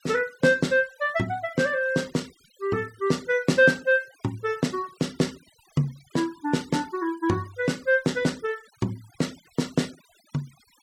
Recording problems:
noise reduction artefacts; signal-to-artefact ratio 24 dB

